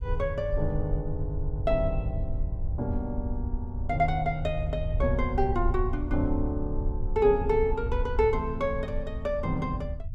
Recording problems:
low-frequency rumble; below 74 Hz, SNR 4 dB

